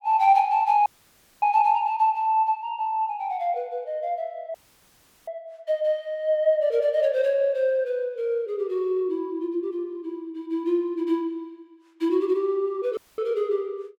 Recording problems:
audio cutting out; at 1 s for 0.5 s, at 4.5 s for 0.5 s and at 13 s

